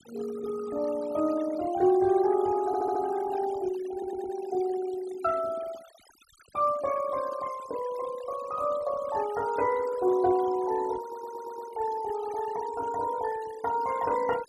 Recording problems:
noise reduction artefacts; signal-to-artefact ratio 17 dB
audio stuttering; at 2.5 s, at 4 s and at 11 s

